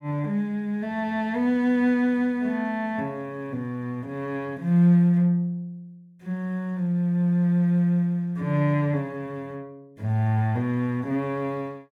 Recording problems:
none

